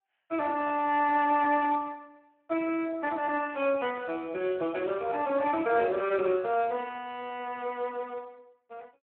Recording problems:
phone line; 280 Hz to 2.8 kHz, Speex

